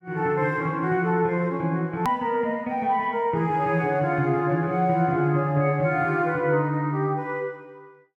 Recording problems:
click at an edit; at 2 s

